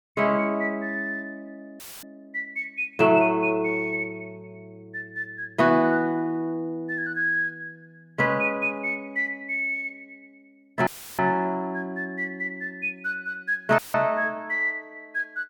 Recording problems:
dropout; at 2 s, at 11 s and at 14 s; filled with static

